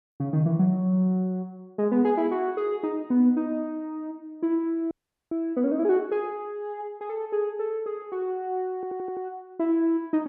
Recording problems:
audio freezing; at 5 s
audio stuttering; at 9 s

